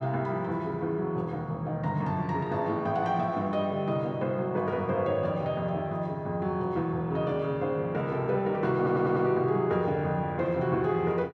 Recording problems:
stutter; at 9 s

